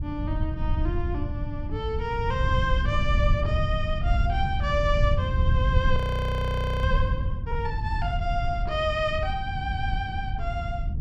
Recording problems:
wind noise; below 100 Hz, SNR -2 dB
audio freezing; at 6 s for 1 s

